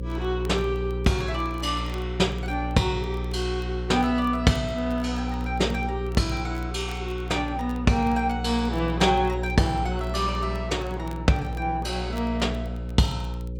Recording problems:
hum; 60 Hz, harmonics up to 540 Hz, SNR 6 dB
crackle; vinyl, SNR 28 dB

